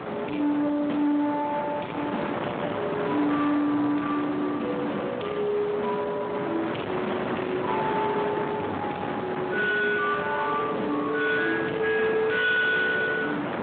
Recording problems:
phone line; 220 Hz to 3.6 kHz, Speex
distorted audio; soft clipping, signal-to-distortion ratio 9 dB
wind noise; below 1.3 kHz, SNR 5 dB

